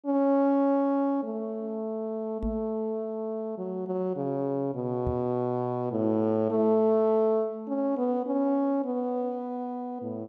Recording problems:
microphone thump; at 2.5 s and at 5 s; peak -2 dB vs average level

